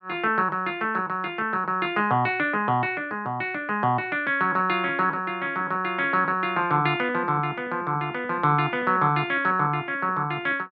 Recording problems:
none

